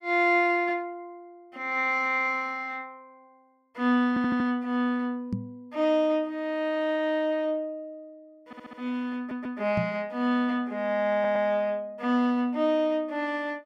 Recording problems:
audio stuttering; 4 times, first at 4 s
knock on the microphone; at 5.5 s and at 10 s; peak 0 dB vs average level

